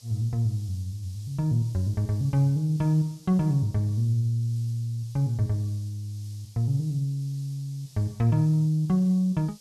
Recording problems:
background hiss; SNR 26 dB

